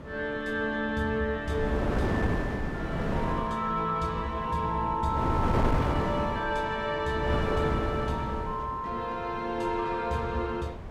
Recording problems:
wind on the microphone; below 550 Hz, SNR 3 dB

